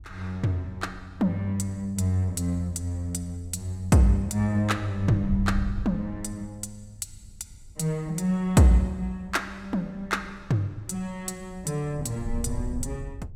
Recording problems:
wind noise; below 88 Hz, SNR 13 dB

